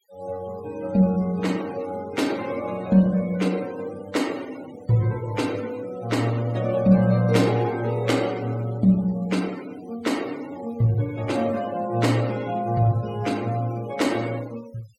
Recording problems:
denoising artefacts; signal-to-artefact ratio 20 dB

